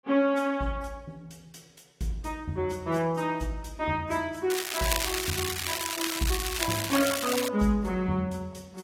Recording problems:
codec artefacts; AAC, log-spectral distance 5 dB, nothing above 13.8 kHz
crackle; from 4.5 to 7.5 s; loose cable, SNR 1 dB

